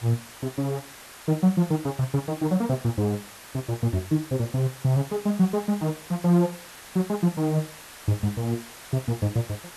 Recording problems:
background hiss; slope -1 dB per octave, SNR 16 dB

